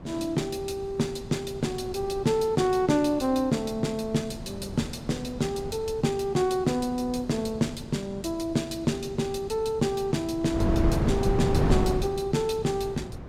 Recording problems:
wind noise; below 290 Hz, SNR 6 dB

